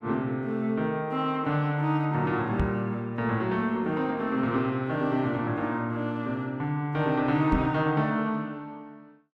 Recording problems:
knock on the microphone; at 2.5 s and at 7.5 s; peak +4 dB vs average level

